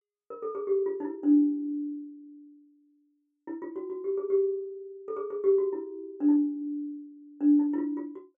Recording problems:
none

